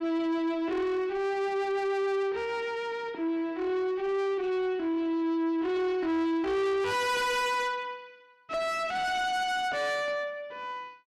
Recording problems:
distortion; soft clipping, signal-to-distortion ratio 7 dB

